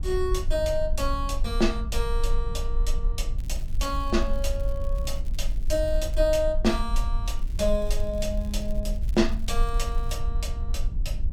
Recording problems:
low-frequency rumble; below 48 Hz, SNR 1 dB
crackle; from 3.5 to 6.5 s and from 7.5 to 10 s; loose cable, SNR 25 dB

